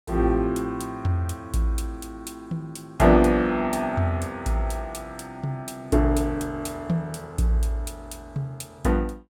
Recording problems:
none

